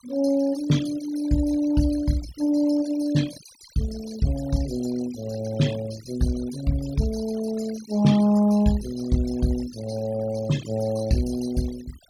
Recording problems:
noise reduction artefacts; signal-to-artefact ratio 16 dB

